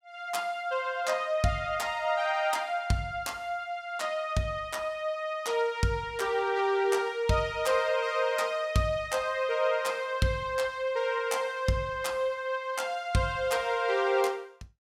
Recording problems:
none

